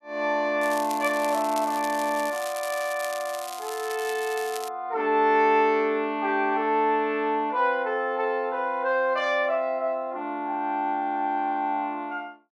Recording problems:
crackling; from 0.5 to 4.5 s; loose cable, SNR 14 dB

